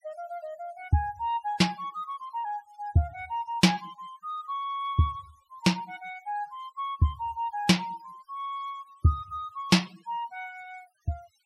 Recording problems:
denoising artefacts; signal-to-artefact ratio 25 dB

